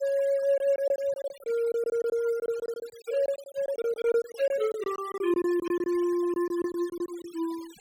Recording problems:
noise reduction artefacts; signal-to-artefact ratio 21 dB
packet loss; 13% of the sound replaced, filled with silence

